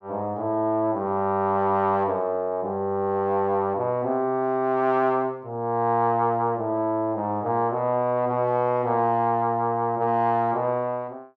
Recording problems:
none

